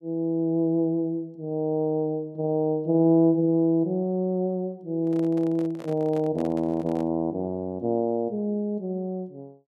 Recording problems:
microphone handling noise; from 5 to 7 s; peak -12 dB vs average level

